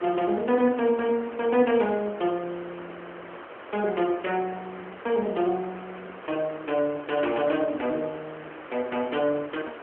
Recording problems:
telephone audio; 260 Hz to 3.7 kHz, AMR-NB
hiss; SNR 15 dB

